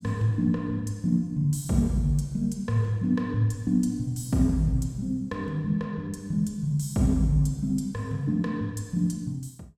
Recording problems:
none

